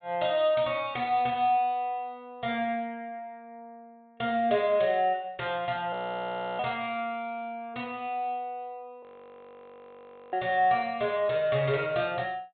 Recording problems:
treble missing; nothing above 4 kHz
audio freezing; at 6 s for 0.5 s and at 9 s for 1.5 s

